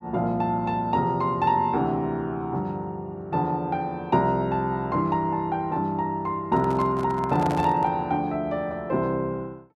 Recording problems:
microphone handling noise; from 6.5 to 8 s; peak -3 dB vs average level

